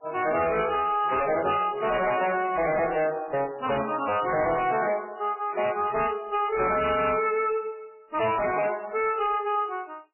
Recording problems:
lossy compression; MP3, then MP3, log-spectral distance 5 dB, nothing above 2.8 kHz
distortion; hard clipping, uneven, signal-to-distortion ratio 7 dB

